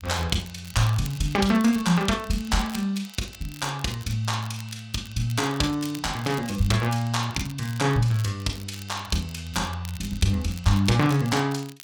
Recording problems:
crackling; vinyl, SNR 19 dB

